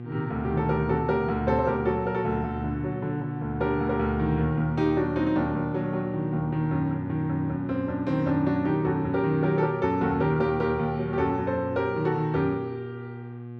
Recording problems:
electrical hum; 60 Hz, harmonics up to 1.2 kHz, SNR 11 dB

